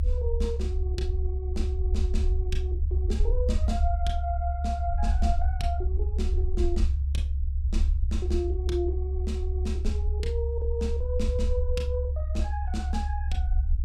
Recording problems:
rumble; below 70 Hz, SNR -6 dB

